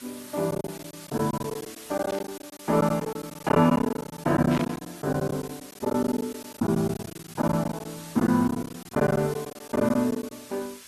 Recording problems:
lossy compression; Opus, log-spectral distance 7 dB
hiss; slope +1 dB per octave, SNR 18 dB
lost packets; 15% of the sound replaced, filled with silence
static burst; at 2 s and at 4.5 s; peak -5 dB vs average level

